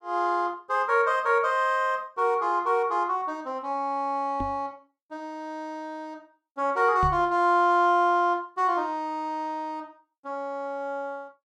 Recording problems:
microphone bump; at 4.5 s and at 7 s; peak -2 dB vs average level

